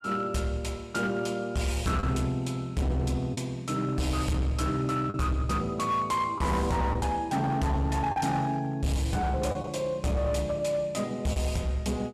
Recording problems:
distorted audio; hard clipping, signal-to-distortion ratio 10 dB
packet loss; 2% of the sound replaced, filled with the last packet

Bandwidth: 14.5 kHz